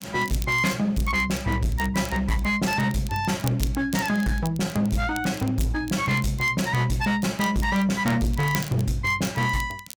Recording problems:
distorted audio; hard clipping, signal-to-distortion ratio 10 dB
crackle; vinyl, SNR 17 dB

